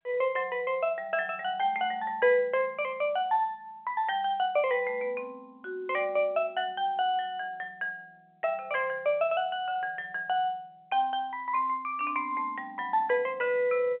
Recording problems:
telephone audio; 320 Hz to 3.3 kHz, G.711

